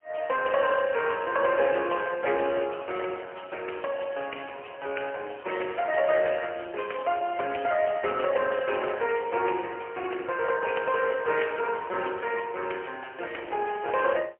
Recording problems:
telephone audio; 320 Hz to 3.1 kHz, AMR-NB, then MP3

